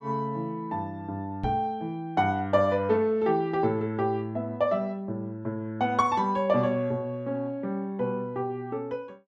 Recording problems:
microphone bump; at 1.5 s; peak -2 dB vs average level

